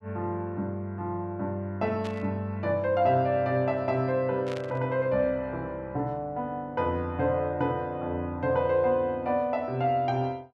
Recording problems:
static burst; at 2 s and at 4.5 s; peak -9 dB vs average level

